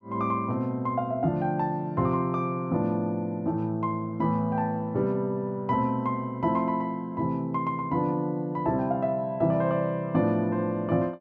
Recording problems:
none

